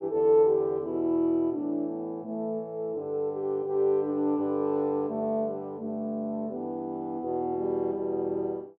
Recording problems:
none

